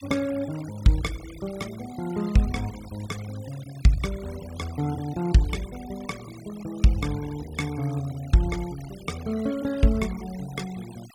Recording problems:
noise reduction artefacts; signal-to-artefact ratio 18 dB

